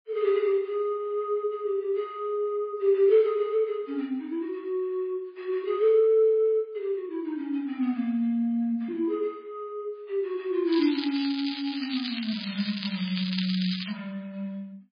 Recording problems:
lossy compression; MP3, log-spectral distance 4 dB, nothing above 10.7 kHz
crackle; from 11 to 14 s; loose cable, SNR 7 dB

